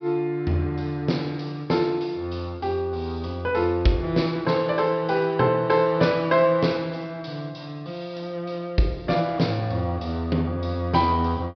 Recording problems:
treble missing; nothing above 5.5 kHz

